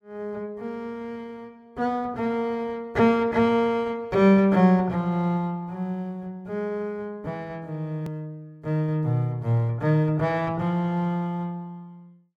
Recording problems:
hard cut with a click; at 8 s

